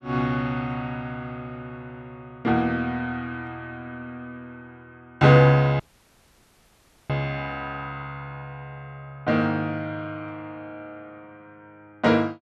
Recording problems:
audio cutting out; at 6 s for 1.5 s

